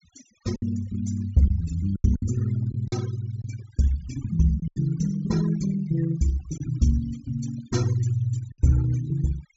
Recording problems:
treble missing; nothing above 8 kHz
denoising artefacts; signal-to-artefact ratio 18 dB
packet loss; 5% of the sound replaced, filled with silence

